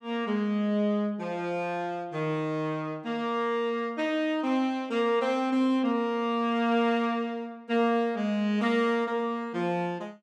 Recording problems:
none

